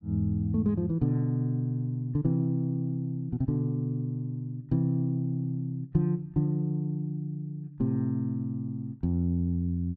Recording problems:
none

